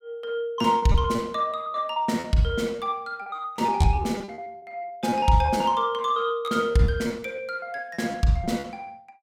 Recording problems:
lost packets; 14% of the sound replaced, filled with repeated pitch periods

